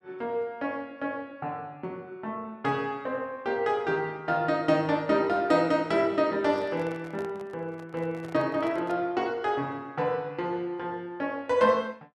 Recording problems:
microphone handling noise; from 6.5 to 9 s; peak -11 dB vs average level

